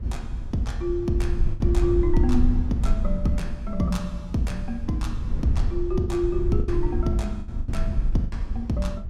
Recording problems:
electrical hum; 60 Hz, harmonics up to 720 Hz, SNR 23 dB
low-frequency rumble; below 68 Hz, SNR 1 dB
lost packets; 5% of the sound replaced, filled with the last packet

